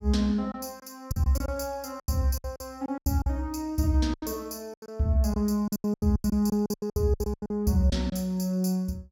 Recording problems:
lost packets; 16% of the sound replaced, filled with silence

